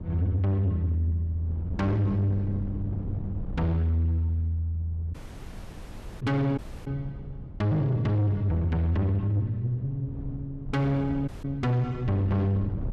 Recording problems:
distorted audio; soft clipping, signal-to-distortion ratio 10 dB
wind noise; below 170 Hz, SNR 12 dB
dropout; at 5 s for 1 s, at 6.5 s and at 11 s

